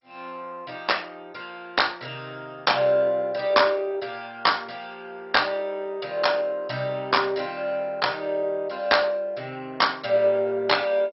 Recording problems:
lossy compression; MP2, log-spectral distance 5 dB, nothing above 5.5 kHz

